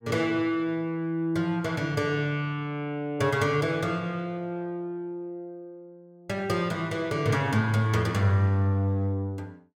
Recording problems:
none

